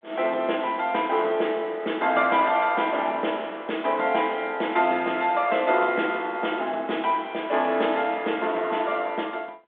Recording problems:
phone line; 260 Hz to 3.6 kHz, G.726

